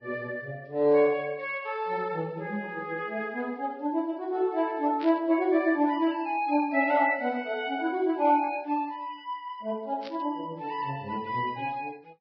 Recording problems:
lossy codec; Vorbis, log-spectral distance 2 dB
burst of static; at 5 s and at 10 s; peak -10 dB vs average level

